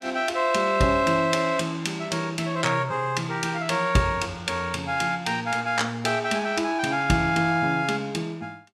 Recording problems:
none

